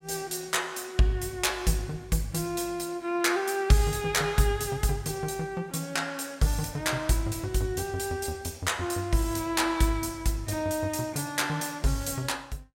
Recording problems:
none

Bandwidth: 16 kHz